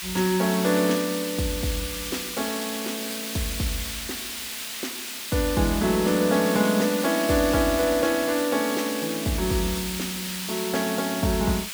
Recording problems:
hiss; SNR 6 dB

